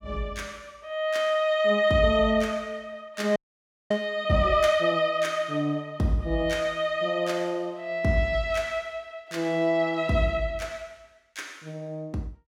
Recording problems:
audio freezing; at 3.5 s for 0.5 s

